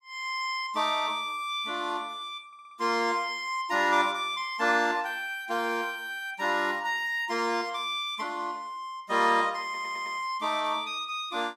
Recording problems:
stutter; at 2.5 s and at 9.5 s

